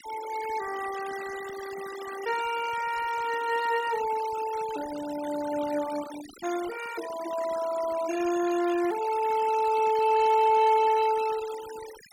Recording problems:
noise reduction artefacts; signal-to-artefact ratio 14 dB

